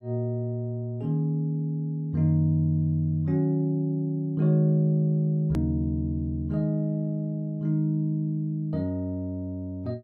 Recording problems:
edit click; at 5.5 s

